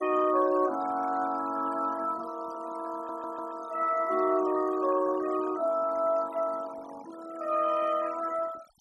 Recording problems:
noise reduction artefacts; signal-to-artefact ratio 17 dB
stutter; at 3 s

